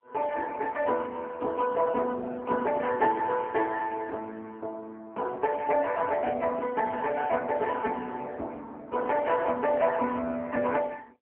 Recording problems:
telephone audio; 280 Hz to 2.2 kHz, AMR-NB

